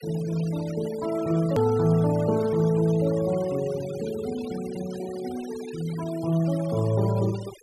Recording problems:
noise reduction artefacts; signal-to-artefact ratio 18 dB
hard cut with a click; at 1.5 s

